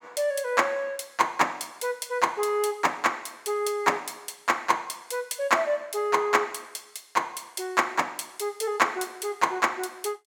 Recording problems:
none

